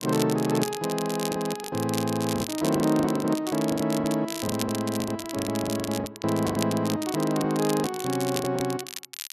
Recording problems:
crackle; vinyl, SNR 9 dB
packet loss; 13% of the sound replaced, filled with the last packet

